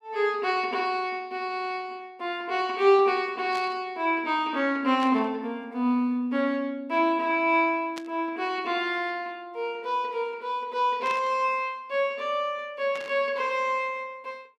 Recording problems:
burst of static; 5 times, first at 3.5 s; peak -8 dB vs average level

